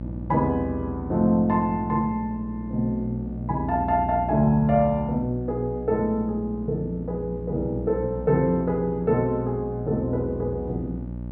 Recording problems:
hum; 60 Hz, harmonics up to 660 Hz, SNR 10 dB

